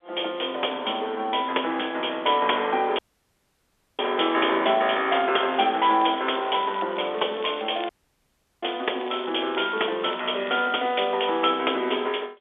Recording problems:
phone line; 280 Hz to 3.6 kHz, G.711
audio cutting out; at 3 s for 1 s and at 8 s for 0.5 s
crackle; from 5.5 to 11 s; loose cable, SNR 20 dB

